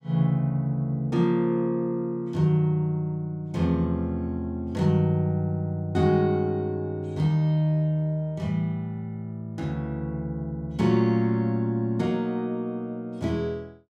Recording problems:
none

